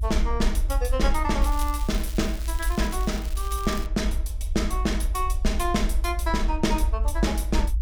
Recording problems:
low-frequency rumble; below 54 Hz, SNR 0 dB
crackle; from 1.5 to 4 s; loose cable, SNR 14 dB

